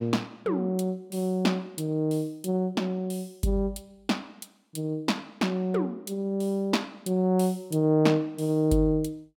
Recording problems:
none

